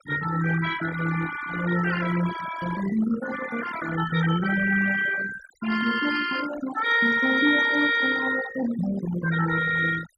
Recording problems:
denoising artefacts; signal-to-artefact ratio 10 dB

